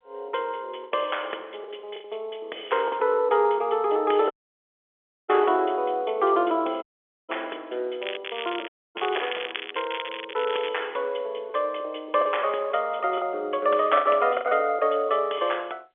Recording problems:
telephone audio; 300 Hz to 3.5 kHz, G.711
lost packets; 4% of the sound replaced, filled with the last packet
dropout; at 4.5 s for 1 s, at 7 s and at 8.5 s
crackle; from 8 to 11 s; loose cable, SNR 9 dB

